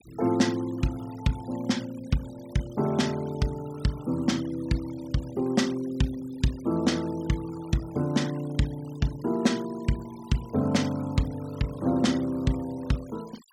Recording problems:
noise reduction artefacts; signal-to-artefact ratio 20 dB

